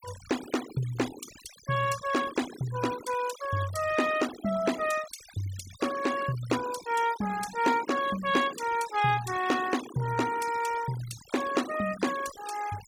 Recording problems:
noise reduction artefacts; signal-to-artefact ratio 13 dB

